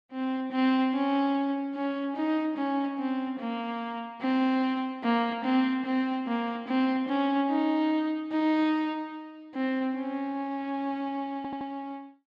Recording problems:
audio stuttering; at 11 s

